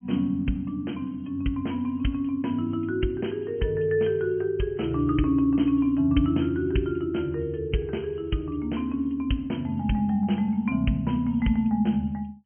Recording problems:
treble missing; nothing above 3.2 kHz
codec artefacts; MP3, log-spectral distance 2 dB

